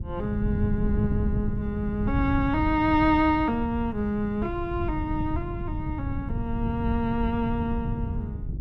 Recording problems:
wind on the microphone; below 140 Hz, SNR 4 dB

